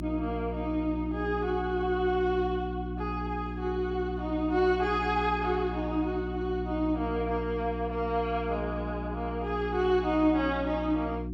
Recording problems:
electrical hum; 60 Hz, harmonics up to 360 Hz, SNR 6 dB

